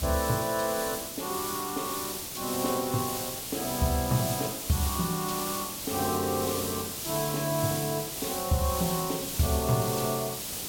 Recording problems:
background hiss; SNR 2 dB

